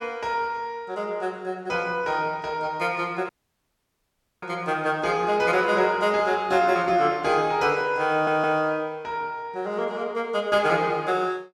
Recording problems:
audio cutting out; at 3.5 s for 1 s
stutter; at 8 s

